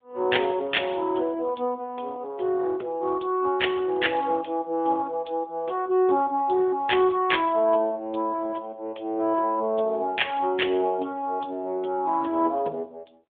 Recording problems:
telephone audio; 260 Hz to 3.6 kHz, AMR-NB

